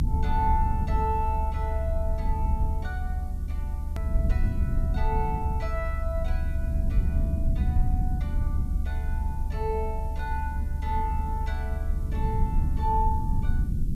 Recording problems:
background hiss; slope +5 dB per octave, SNR 26 dB
rumble; below 74 Hz, SNR -5 dB
click at an edit; at 4 s

